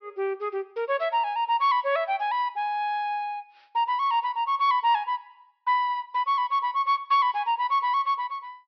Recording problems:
low-pass filter; nothing above 5.5 kHz

